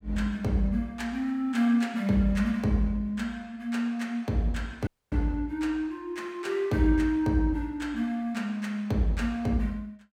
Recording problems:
dropout; at 5 s

